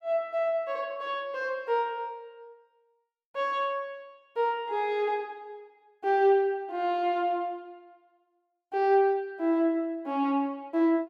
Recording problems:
none

